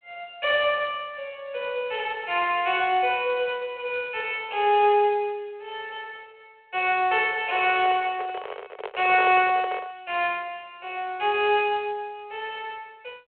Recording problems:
telephone audio; 370 Hz to 3.3 kHz, G.726
handling noise; from 7.5 to 10 s; peak -3 dB vs average level

